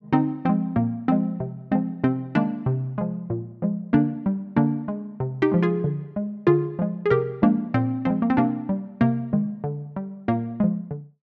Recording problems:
none

